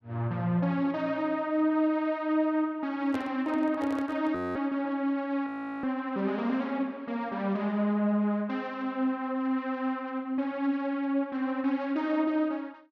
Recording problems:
microphone handling noise; from 3 to 4.5 s; peak -5 dB vs average level
frozen audio; at 4.5 s and at 5.5 s

